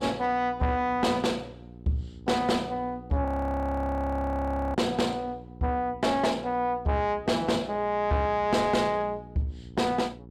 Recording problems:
distorted audio; soft clipping, signal-to-distortion ratio 10 dB
hum; 60 Hz, harmonics up to 540 Hz, SNR 19 dB
frozen audio; at 3.5 s for 1.5 s

